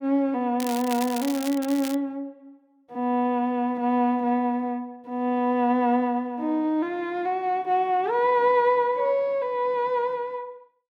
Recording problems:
crackle; from 0.5 to 2 s; loose cable, SNR 12 dB

